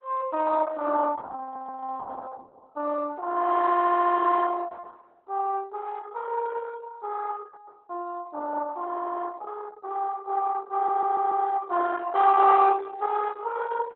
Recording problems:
lossy compression; Opus, log-spectral distance 4 dB
audio stuttering; 4 times, first at 1.5 s

